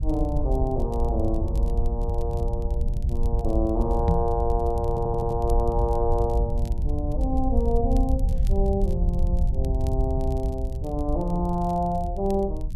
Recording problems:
rumble; below 72 Hz, SNR -1 dB
crackle; vinyl, SNR 27 dB
microphone bump; at 4 s; peak +9 dB vs average level
stutter; at 5 s

